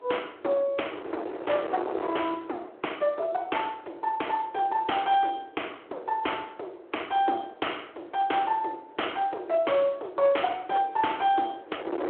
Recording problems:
telephone audio; 300 Hz to 3.3 kHz, Speex
distortion; hard clipping, uneven, signal-to-distortion ratio 9 dB
wind on the microphone; below 770 Hz, SNR 13 dB

